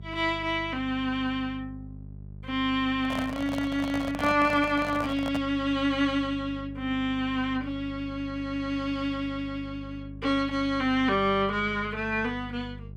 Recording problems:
electrical hum; 50 Hz, harmonics up to 400 Hz, SNR 15 dB
handling noise; from 3 to 5.5 s; peak -1 dB vs average level

